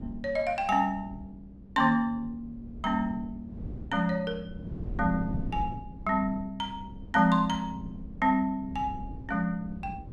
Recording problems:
wind on the microphone; below 180 Hz, SNR 13 dB

